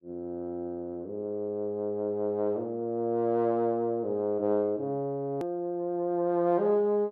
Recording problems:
edit click; at 5.5 s

